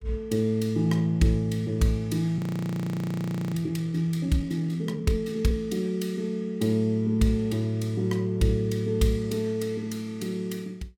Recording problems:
audio freezing; at 2.5 s for 1 s

